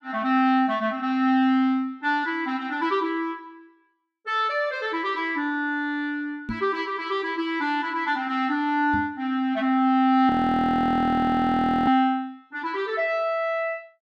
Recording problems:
knock on the microphone; at 6.5 s and at 9 s; peak -3 dB vs average level
audio freezing; at 10 s for 1.5 s

